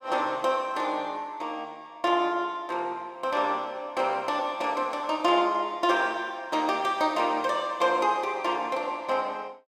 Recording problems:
none

